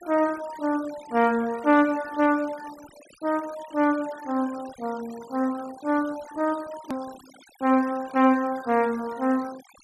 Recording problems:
denoising artefacts; signal-to-artefact ratio 20 dB
edit click; at 7 s

